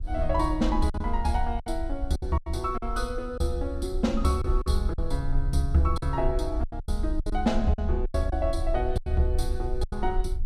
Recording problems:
rumble; below 52 Hz, SNR 4 dB
lost packets; 10% of the sound replaced, filled with silence

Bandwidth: 14.5 kHz